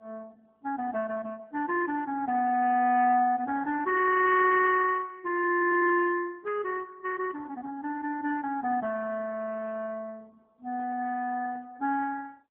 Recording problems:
telephone audio; 260 Hz to 3.7 kHz, AMR-NB

